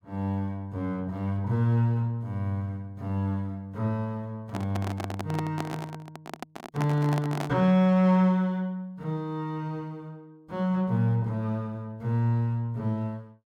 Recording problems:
handling noise; from 4.5 to 7.5 s; peak -2 dB vs average level

